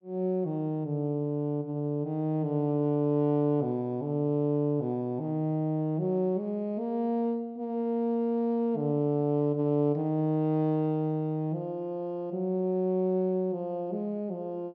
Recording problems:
low-pass filter; nothing above 6.5 kHz

